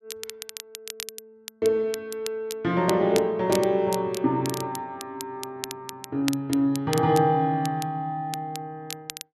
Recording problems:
crackling; vinyl, SNR 13 dB

